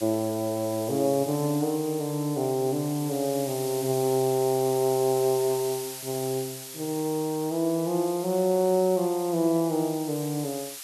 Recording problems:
hiss; slope +4 dB per octave, SNR 12 dB

